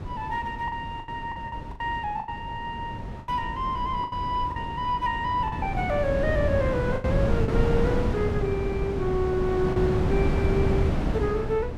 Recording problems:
wind on the microphone; below 290 Hz, SNR 0 dB
packet loss; 7% of the sound replaced, filled with the last packet

